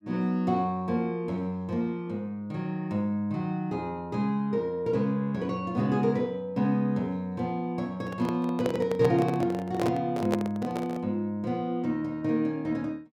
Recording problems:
handling noise; from 8 to 11 s; peak +3 dB vs average level

